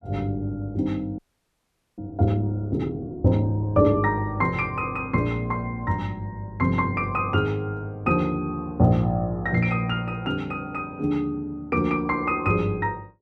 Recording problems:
audio freezing; at 1 s for 1 s

